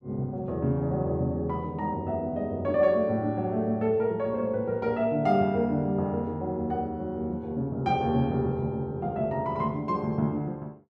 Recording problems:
none

